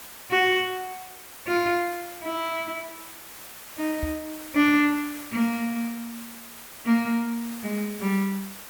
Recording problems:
background hiss; slope -1 dB per octave, SNR 14 dB
microphone thump; at 4 s; peak -2 dB vs average level

